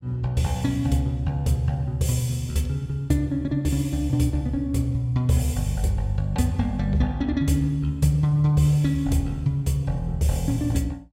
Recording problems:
none

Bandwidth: 16 kHz